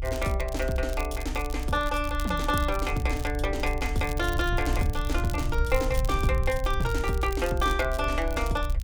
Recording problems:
rumble; below 62 Hz, strongest tone 36 Hz, SNR 3 dB
crackle; vinyl, SNR 15 dB

